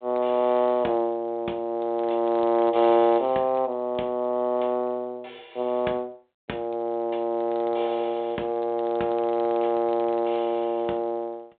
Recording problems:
phone line; 280 Hz to 3.8 kHz, G.726

